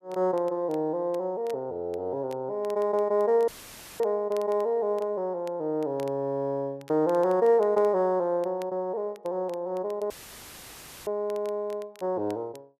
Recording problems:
crackling; vinyl, SNR 28 dB
dropout; at 3.5 s for 0.5 s and at 10 s for 1 s; filled with static

